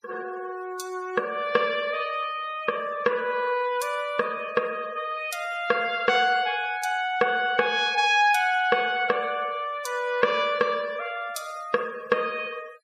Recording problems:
noise reduction artefacts; signal-to-artefact ratio 22 dB

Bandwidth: 15.5 kHz